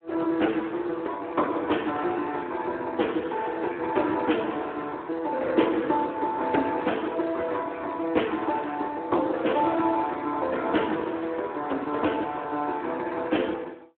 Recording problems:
phone line; 260 Hz to 3.4 kHz, Speex

